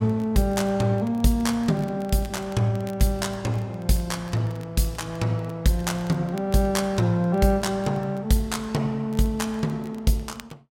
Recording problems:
crackling; vinyl, SNR 27 dB

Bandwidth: 16 kHz